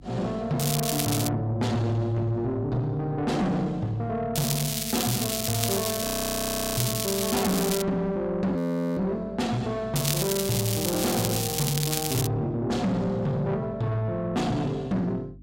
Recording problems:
distortion; soft clipping, signal-to-distortion ratio 8 dB
hum; 50 Hz, harmonics up to 300 Hz, SNR 21 dB
crackling; at 0.5 s, from 4.5 to 8 s and from 10 to 12 s; loose cable, SNR 1 dB
frozen audio; at 6 s for 0.5 s and at 8.5 s

